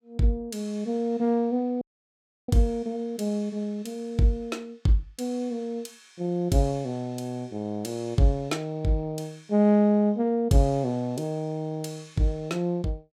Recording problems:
audio cutting out; at 2 s for 0.5 s

